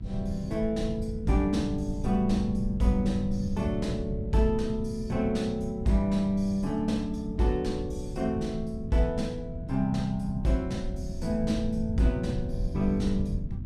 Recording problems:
hum; 60 Hz, harmonics up to 1 kHz, SNR 24 dB
low-frequency rumble; below 140 Hz, SNR 7 dB

